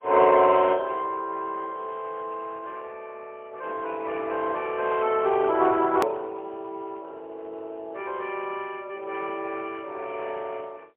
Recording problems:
telephone audio; 300 Hz to 3.5 kHz, AMR-NB, then MP3
edit click; at 6 s

